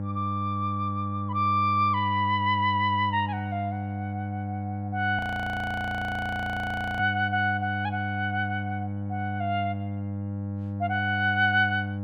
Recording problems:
hum; 50 Hz, harmonics up to 800 Hz, SNR 6 dB
audio freezing; at 5 s for 2 s

